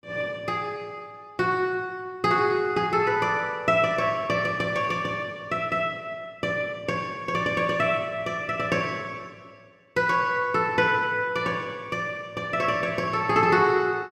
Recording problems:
none

